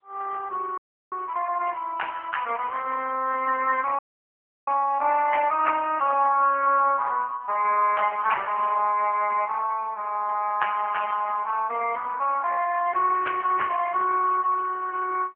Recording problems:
telephone audio; 320 Hz to 2.8 kHz, AMR-NB
audio cutting out; at 1 s and at 4 s for 0.5 s

